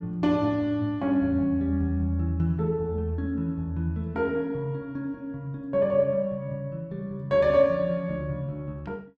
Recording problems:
none

